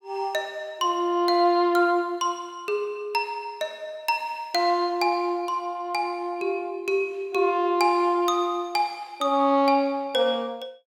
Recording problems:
none

